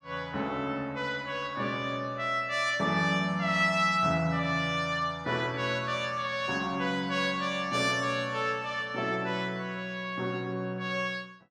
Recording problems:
none

